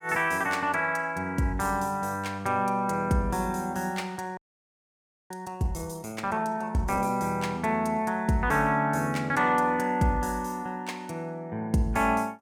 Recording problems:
frozen audio; at 4.5 s for 1 s

